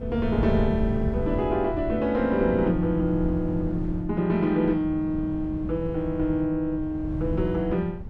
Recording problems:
wind on the microphone; below 160 Hz, SNR 8 dB

